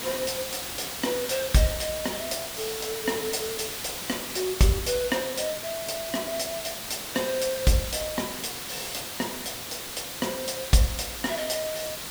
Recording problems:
hiss; slope -1 dB per octave, SNR 4 dB

